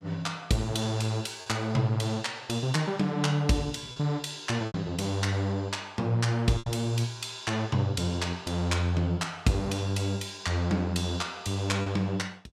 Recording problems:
packet loss; 2% of the sound replaced, filled with repeated pitch periods

